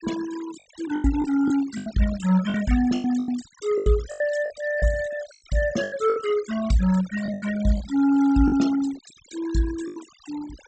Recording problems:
low-pass filter; nothing above 8 kHz
noise reduction artefacts; signal-to-artefact ratio 15 dB
lost packets; 11% of the sound replaced, filled with the last packet

